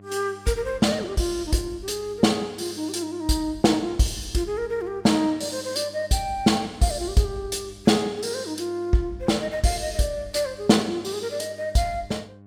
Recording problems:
electrical hum; 50 Hz, harmonics up to 1.1 kHz, SNR 23 dB

